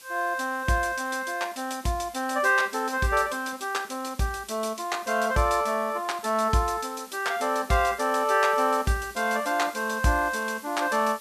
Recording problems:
background hiss; slope +2 dB per octave, SNR 20 dB

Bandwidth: 14 kHz